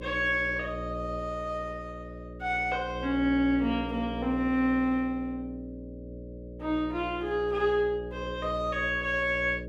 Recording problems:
hum; 60 Hz, harmonics up to 600 Hz, SNR 11 dB

